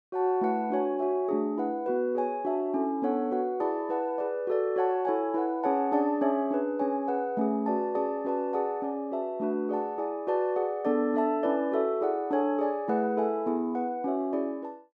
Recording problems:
none

